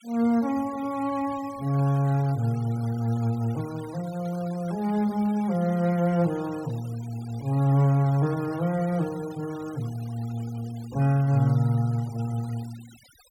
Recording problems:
noise reduction artefacts; signal-to-artefact ratio 22 dB

